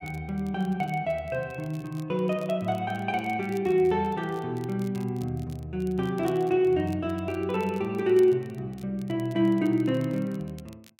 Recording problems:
crackling; vinyl, SNR 27 dB

